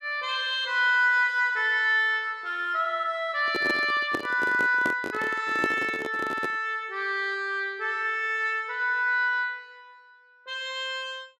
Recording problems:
handling noise; from 3.5 to 6.5 s; peak +1 dB vs average level

